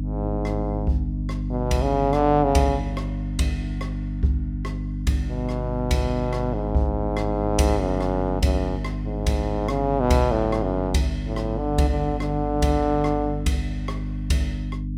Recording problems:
hum; 50 Hz, harmonics up to 300 Hz, SNR 5 dB

